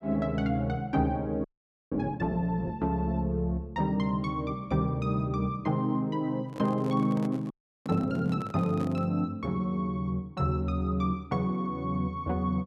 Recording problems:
audio freezing; at 1.5 s and at 7.5 s
handling noise; from 6.5 to 9 s; peak -9 dB vs average level

